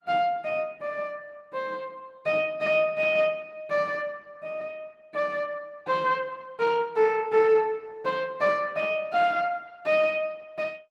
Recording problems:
codec artefacts; Opus, log-spectral distance 2 dB

